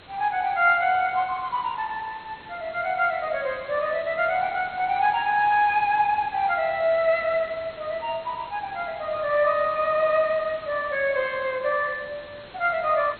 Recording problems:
lossy compression; MP2, log-spectral distance 5 dB, nothing above 4.2 kHz
background hiss; SNR 20 dB

